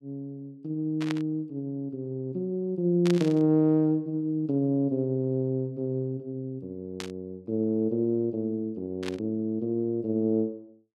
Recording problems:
static burst; 4 times, first at 1 s; peak -3 dB vs average level

